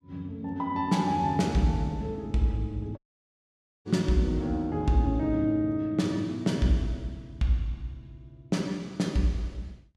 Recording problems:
dropout; at 3 s for 1 s

